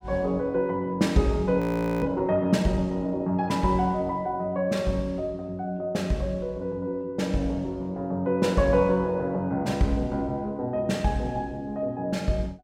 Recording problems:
audio freezing; at 1.5 s

